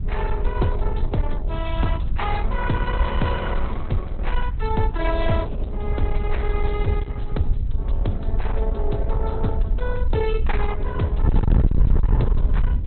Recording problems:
lossy compression; Opus, log-spectral distance 2 dB, nothing above 4 kHz
distortion; soft clipping, signal-to-distortion ratio 8 dB
wind on the microphone; below 66 Hz, SNR -3 dB

